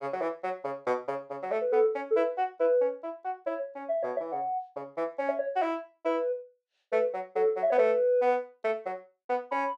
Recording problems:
none

